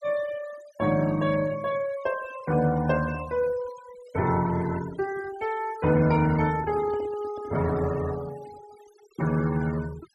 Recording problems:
noise reduction artefacts; signal-to-artefact ratio 18 dB
handling noise; from 6.5 to 8 s; peak -7 dB vs average level

